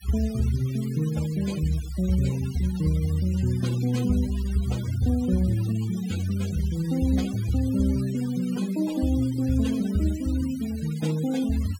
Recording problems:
denoising artefacts; signal-to-artefact ratio 17 dB

